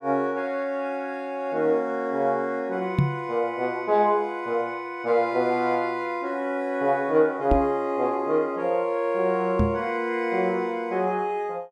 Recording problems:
microphone thump; at 3 s, at 7.5 s and at 9.5 s; peak +7 dB vs average level

